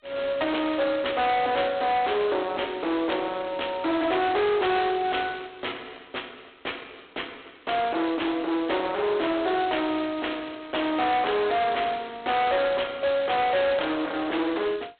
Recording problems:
phone line; 320 Hz to 3.7 kHz, G.726
distortion; hard clipping, uneven, signal-to-distortion ratio 7 dB

